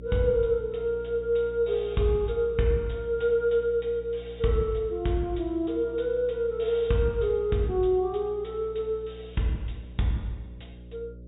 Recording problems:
treble cut off; nothing above 4 kHz
electrical hum; 60 Hz, harmonics up to 600 Hz, SNR 18 dB

